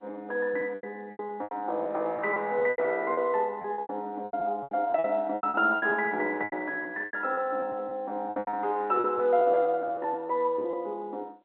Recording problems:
phone line; 300 Hz to 3.3 kHz, G.711
packet loss; 15% of the sound replaced, filled with repeated pitch periods

